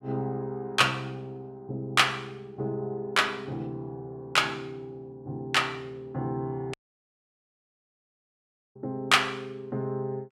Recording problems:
audio cutting out; at 6.5 s for 2 s

